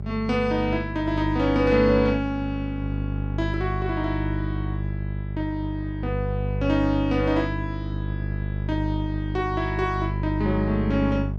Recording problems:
electrical hum; 50 Hz, harmonics up to 600 Hz, SNR 3 dB

